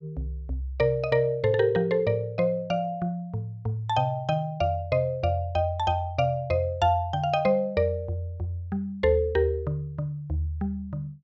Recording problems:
none

